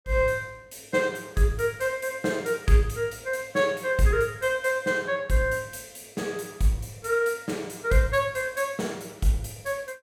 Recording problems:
none

